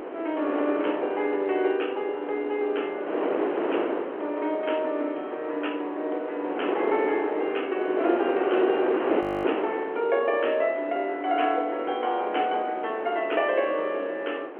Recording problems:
telephone audio; 300 Hz to 3.3 kHz, G.711
wind noise; below 730 Hz, SNR 4 dB
audio freezing; at 9 s

